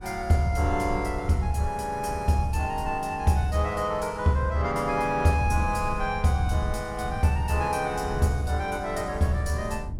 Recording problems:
wind noise; below 98 Hz, SNR 11 dB

